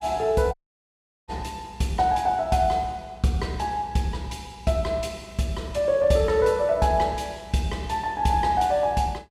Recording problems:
dropout; at 0.5 s for 0.5 s

